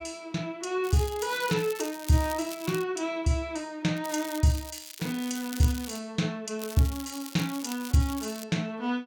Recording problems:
crackling; from 1 to 3 s, from 4 to 6 s and from 6.5 to 8.5 s; loose cable, SNR 12 dB

